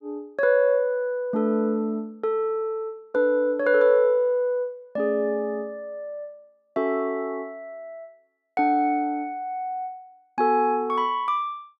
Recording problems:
none

